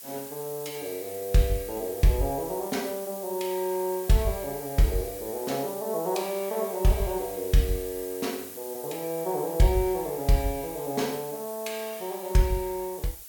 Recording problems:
background hiss; slope +1 dB per octave, SNR 11 dB

